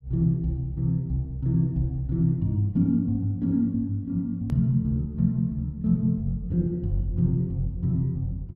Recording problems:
edit click; at 4.5 s

